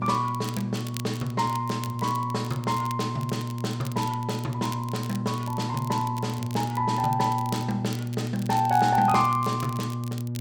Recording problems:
electrical hum; 60 Hz, harmonics up to 600 Hz, SNR 4 dB
crackling; vinyl, SNR 16 dB

